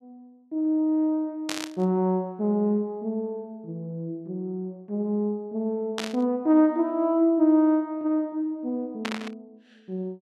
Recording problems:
static burst; at 1.5 s, at 6 s and at 9 s; peak -1 dB vs average level

